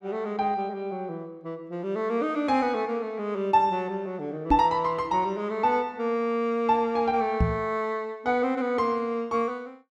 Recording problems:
microphone thump; at 4.5 s and at 7.5 s; peak +6 dB vs average level

